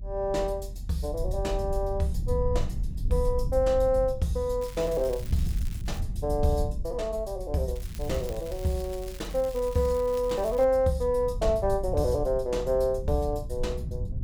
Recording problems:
rumble; below 80 Hz, SNR 7 dB
crackling; from 4.5 to 6 s and from 8 to 11 s; loose cable, SNR 20 dB

